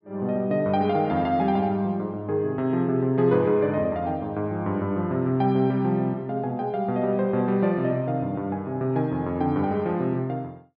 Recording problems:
treble cut off; nothing above 5.5 kHz

